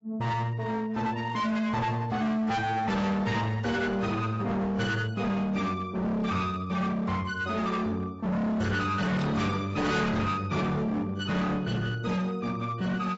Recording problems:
lossy compression; AAC, log-spectral distance 2 dB, nothing above 7.6 kHz
distorted audio; hard clipping, signal-to-distortion ratio 6 dB

